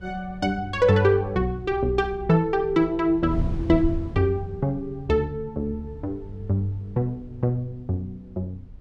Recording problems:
wind on the microphone; below 110 Hz, SNR 14 dB

